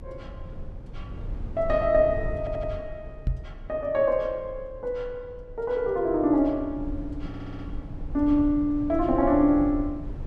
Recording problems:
low-frequency rumble; below 96 Hz, SNR 13 dB
stutter; at 2.5 s and at 7.5 s
microphone bump; at 3.5 s; peak +1 dB vs average level

